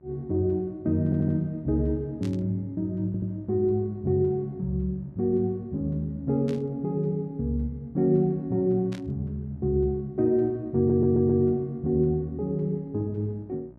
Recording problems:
electrical hum; 60 Hz, harmonics up to 960 Hz, SNR 27 dB
audio stuttering; at 1 s, at 3 s and at 11 s
static burst; at 2 s, at 6.5 s and at 9 s; peak -14 dB vs average level

